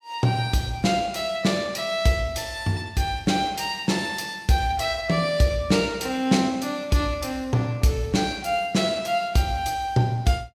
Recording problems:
none

